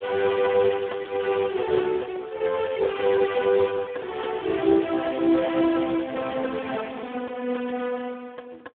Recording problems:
telephone audio; 260 Hz to 3.4 kHz, Speex

